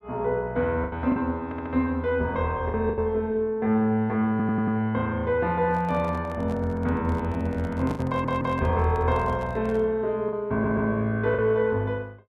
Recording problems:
packet loss; 4% of the sound replaced, filled with the last packet
stutter; 4 times, first at 1.5 s
handling noise; from 5.5 to 10 s; peak -9 dB vs average level

